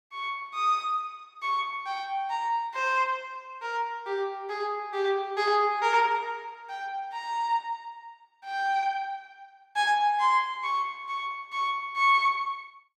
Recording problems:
none

